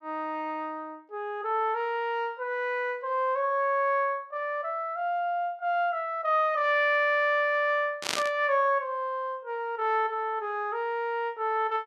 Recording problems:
static burst; at 8 s; peak +4 dB vs average level

